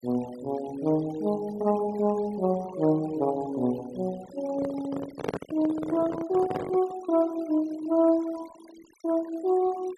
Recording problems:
noise reduction artefacts; signal-to-artefact ratio 19 dB
microphone handling noise; from 4.5 to 7 s; peak +1 dB vs average level

